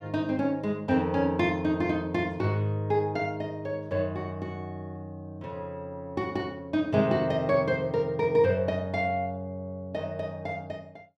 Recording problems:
none

